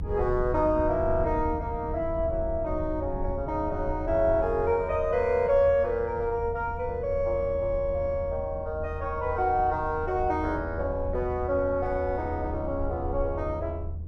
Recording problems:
low-frequency rumble; below 84 Hz, SNR 9 dB

